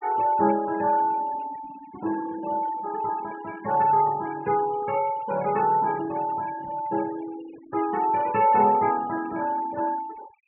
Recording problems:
treble missing; nothing above 3 kHz
denoising artefacts; signal-to-artefact ratio 17 dB

